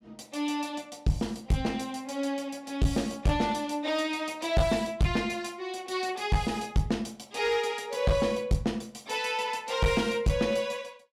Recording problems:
distortion; hard clipping, uneven, signal-to-distortion ratio 9 dB

